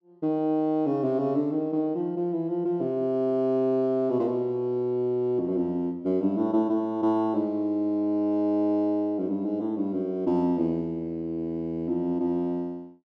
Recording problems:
none

